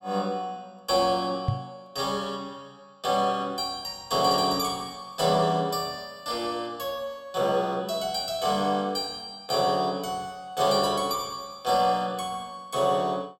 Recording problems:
microphone bump; at 1.5 s; peak +5 dB vs average level

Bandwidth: 16 kHz